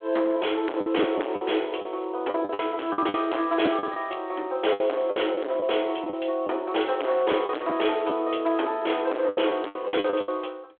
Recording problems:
phone line; 260 Hz to 3.4 kHz, G.726
distortion; hard clipping, signal-to-distortion ratio 7 dB
lost packets; 11% of the sound replaced, filled with the last packet

